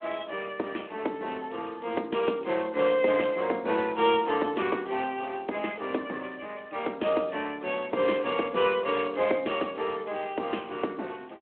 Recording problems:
telephone audio; 240 Hz to 3.3 kHz, Speex

